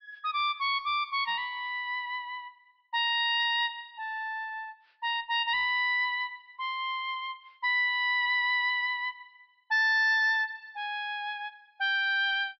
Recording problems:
treble missing; nothing above 5.5 kHz
distorted audio; soft clipping, signal-to-distortion ratio 11 dB

